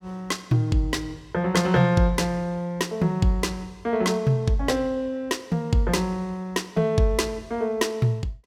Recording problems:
none

